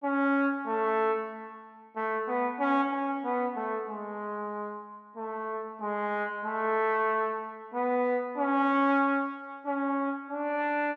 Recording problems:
none

